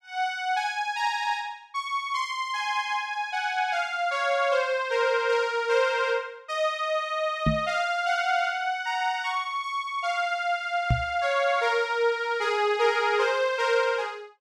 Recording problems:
microphone bump; at 7.5 s and at 11 s; peak +5 dB vs average level

